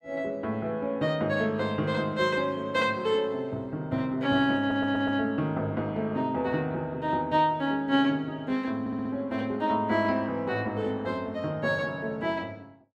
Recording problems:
stutter; at 4.5 s and at 9 s

